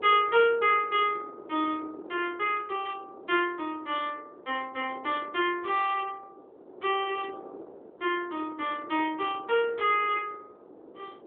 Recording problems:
phone line; 320 Hz to 3.5 kHz, AMR-NB
wind noise; below 550 Hz, SNR 19 dB

